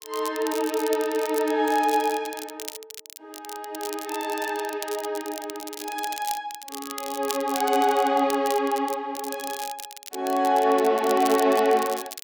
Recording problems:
crackle; vinyl, SNR 13 dB

